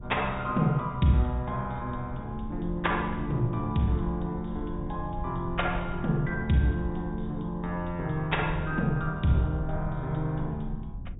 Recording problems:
treble missing; nothing above 3.8 kHz
lossy compression; MP2, log-spectral distance 3 dB
rumble; below 100 Hz, SNR 11 dB

